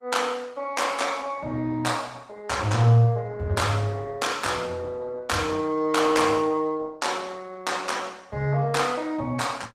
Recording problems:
lossy compression; Opus, log-spectral distance 3 dB, nothing above 15.5 kHz

